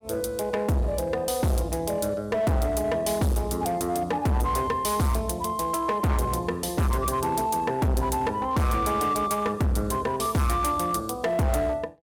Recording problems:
distorted audio; hard clipping, signal-to-distortion ratio 6 dB

